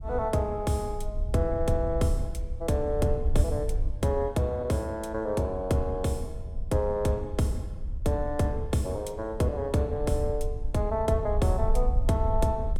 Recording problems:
wind noise; below 62 Hz, SNR 6 dB

